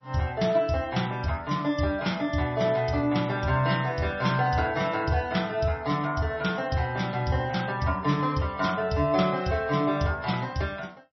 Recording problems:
lossy compression; MP3, log-spectral distance 3 dB, nothing above 5.7 kHz

